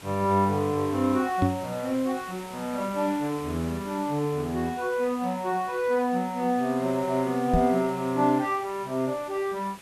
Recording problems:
hiss; slope -2 dB per octave, SNR 18 dB
knock on the microphone; at 1.5 s and at 7.5 s; peak +6 dB vs average level

